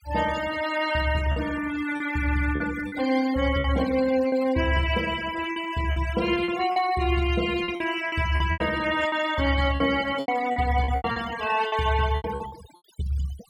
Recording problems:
denoising artefacts; signal-to-artefact ratio 14 dB
packet loss; 10% of the sound replaced, filled with repeated pitch periods

